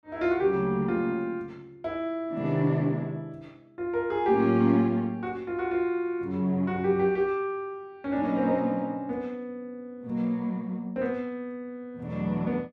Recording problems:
none

